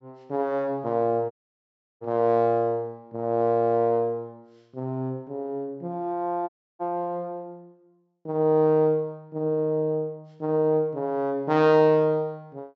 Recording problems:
treble cut off; nothing above 8 kHz
dropout; at 1.5 s for 0.5 s and at 6.5 s

